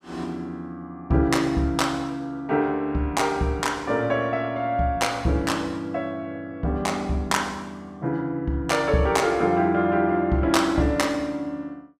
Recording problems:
none

